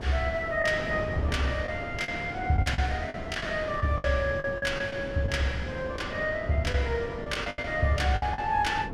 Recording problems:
wind noise; below 490 Hz, SNR 10 dB
lost packets; 9% of the sound replaced, filled with the last packet

